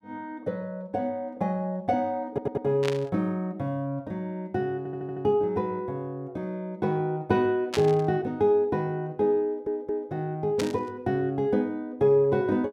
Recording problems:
stutter; at 2.5 s, at 5 s and at 9.5 s
burst of static; at 3 s, at 7.5 s and at 11 s; peak +1 dB vs average level

